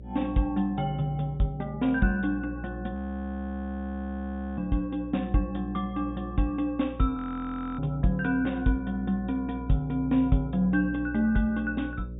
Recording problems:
treble cut off; nothing above 4 kHz
hum; 60 Hz, harmonics up to 600 Hz, SNR 12 dB
audio freezing; at 3 s for 1.5 s and at 7 s for 0.5 s

